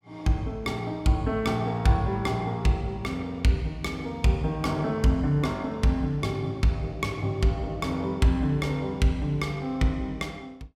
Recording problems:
none

